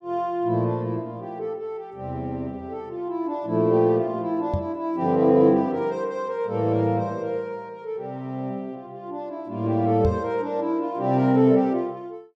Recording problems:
knock on the microphone; at 4.5 s and at 10 s; peak +3 dB vs average level

